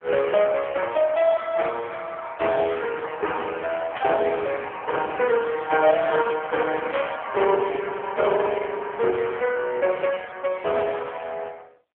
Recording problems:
phone line; 320 Hz to 3.3 kHz, AMR-NB
burst of static; at 4 s and at 7 s; peak -4 dB vs average level

